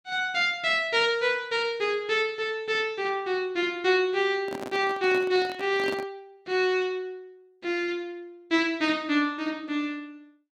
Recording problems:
microphone handling noise; from 4.5 to 6 s; peak -5 dB vs average level

